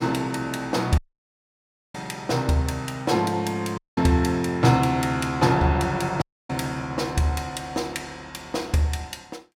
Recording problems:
dropout; at 1 s for 1 s, at 4 s and at 6 s

